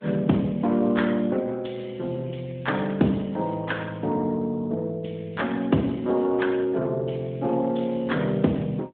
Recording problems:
telephone audio; 130 Hz to 3.6 kHz, AMR-NB

